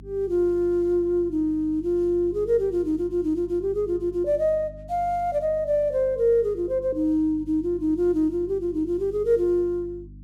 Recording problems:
electrical hum; 50 Hz, harmonics up to 300 Hz, SNR 20 dB

